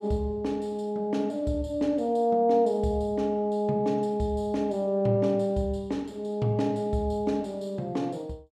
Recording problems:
none

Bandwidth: 14 kHz